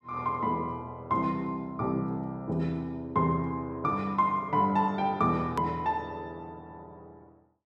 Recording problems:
hard cut with a click; at 5.5 s

